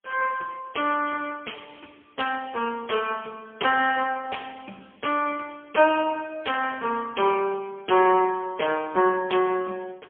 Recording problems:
telephone audio; 320 Hz to 3.3 kHz, AMR-NB, then MP3

